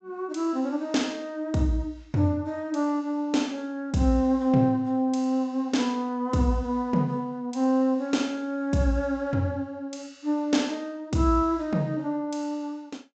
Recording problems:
treble missing; nothing above 8 kHz

